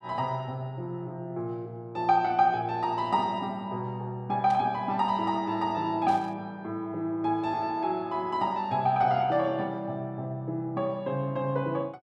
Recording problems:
burst of static; at 4.5 s and at 6 s; peak -13 dB vs average level

